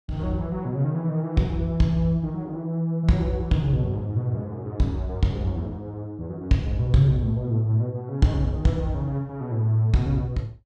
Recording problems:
none

